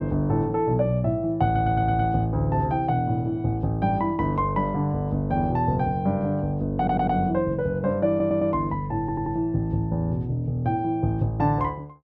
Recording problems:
stutter; 4 times, first at 1.5 s

